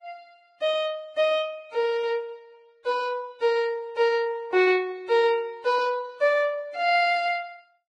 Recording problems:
codec artefacts; Vorbis, log-spectral distance 2 dB

